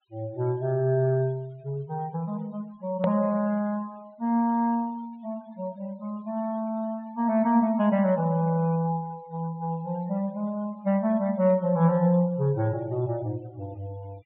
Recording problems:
treble cut off; nothing above 4 kHz
denoising artefacts; signal-to-artefact ratio 27 dB
hard cut with a click; at 3 s

